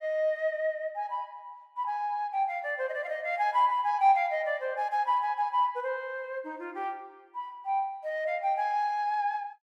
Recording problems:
none

